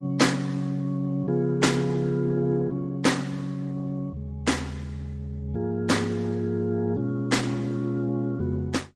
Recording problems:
lossy compression; MP3, then Opus, log-spectral distance 2 dB

